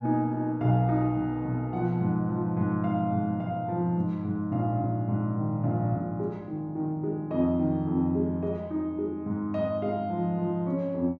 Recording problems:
none

